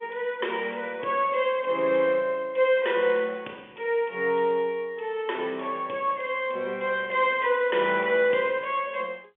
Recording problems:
phone line; 280 Hz to 3.4 kHz, G.711

